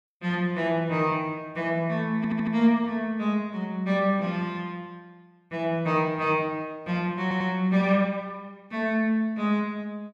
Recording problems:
stutter; at 2 s and at 7 s

